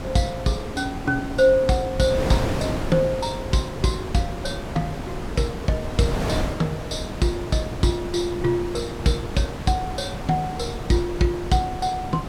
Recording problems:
wind on the microphone; below 640 Hz, SNR 6 dB

